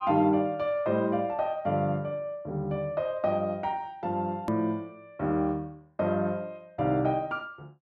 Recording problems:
hard cut with a click; at 4.5 s

